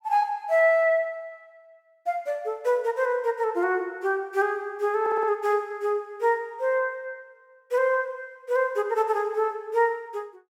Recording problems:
audio stuttering; at 5 s

